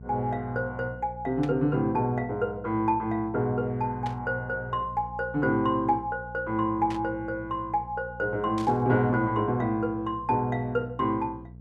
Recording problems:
hum; 60 Hz, harmonics up to 480 Hz, SNR 17 dB
burst of static; 4 times, first at 1.5 s; peak -9 dB vs average level

